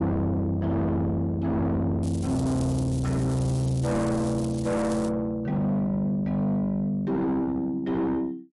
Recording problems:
lossy codec; MP3, log-spectral distance 2 dB
distorted audio; soft clipping, signal-to-distortion ratio 6 dB
crackle; from 2 to 5 s; loose cable, SNR 18 dB

